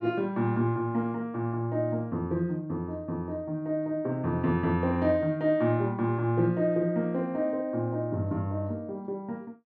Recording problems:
none

